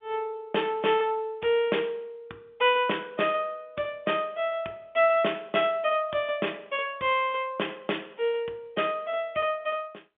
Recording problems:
phone line; 260 Hz to 3.6 kHz, G.711

